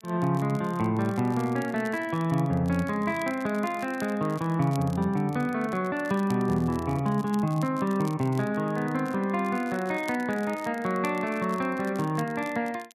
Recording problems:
crackle; vinyl, SNR 23 dB

